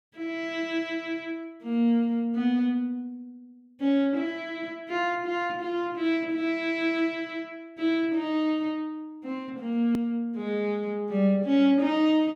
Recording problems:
click at an edit; at 10 s

